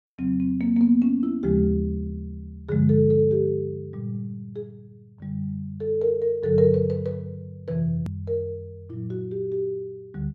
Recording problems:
hard cut with a click; at 8 s

